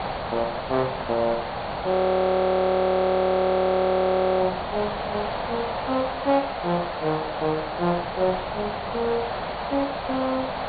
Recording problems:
low-pass filter; nothing above 4.6 kHz
background hiss; SNR 5 dB
wind noise; below 260 Hz, SNR 17 dB
audio freezing; at 2 s for 2.5 s

